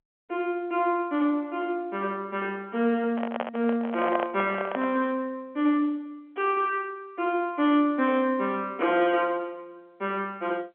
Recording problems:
phone line; 190 Hz to 3.3 kHz, G.711
handling noise; from 3 to 5 s; peak +1 dB vs average level

